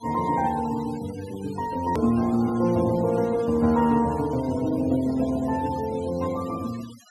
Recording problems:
denoising artefacts; signal-to-artefact ratio 20 dB
hard cut with a click; at 2 s

